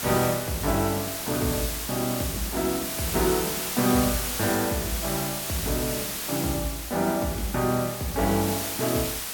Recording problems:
hiss; slope 0 dB per octave, SNR 2 dB

